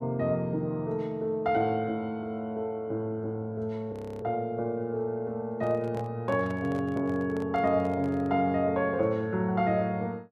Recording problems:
frozen audio; at 4 s
microphone handling noise; from 5.5 to 8.5 s; peak -9 dB vs average level

